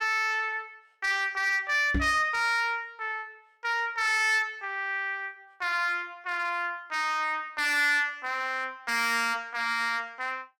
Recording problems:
distorted audio; hard clipping, uneven, signal-to-distortion ratio 11 dB
microphone thump; at 2 s; peak +2 dB vs average level

